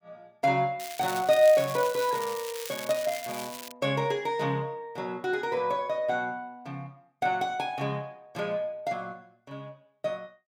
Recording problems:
crackle; from 1 to 3.5 s; loose cable, SNR 11 dB

